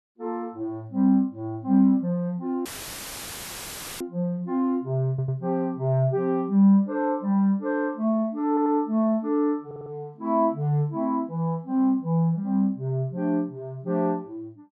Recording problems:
audio cutting out; at 2.5 s for 1.5 s; filled with static
audio stuttering; at 5 s, at 8.5 s and at 9.5 s

